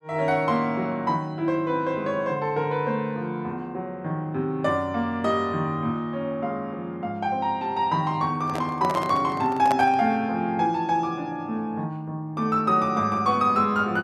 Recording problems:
handling noise; from 8.5 to 10 s; peak +1 dB vs average level

